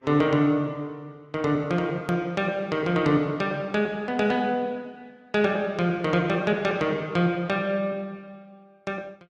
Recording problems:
lossy compression; Vorbis, log-spectral distance 2 dB, nothing above 13.1 kHz
click at an edit; at 2 s

